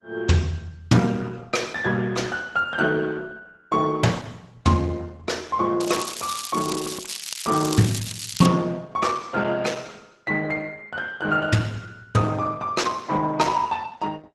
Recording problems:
lossy compression; Opus, log-spectral distance 6 dB, nothing above 12 kHz
crackle; from 6 to 8.5 s; loose cable, SNR 9 dB

